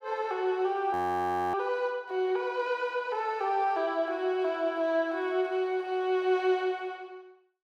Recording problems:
audio freezing; at 1 s for 0.5 s

